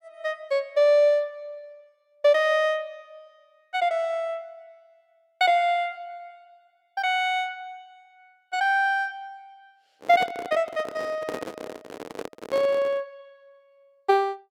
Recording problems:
handling noise; from 10 to 13 s; peak -5 dB vs average level

